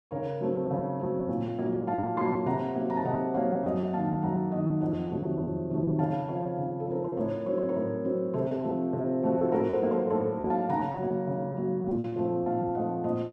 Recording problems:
lost packets; 7% of the sound replaced, filled with repeated pitch periods

